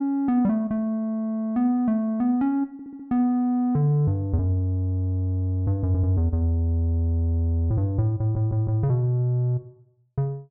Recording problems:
stutter; at 2.5 s, at 6 s and at 8 s

